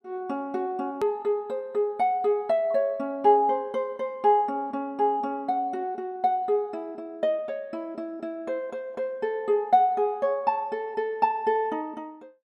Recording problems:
hard cut with a click; at 1 s

